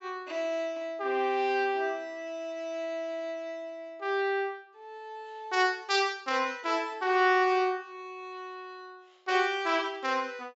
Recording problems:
treble missing; nothing above 8 kHz

